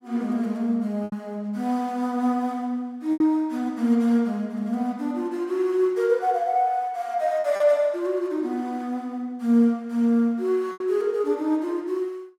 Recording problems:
lost packets; 3% of the sound replaced, filled with repeated pitch periods

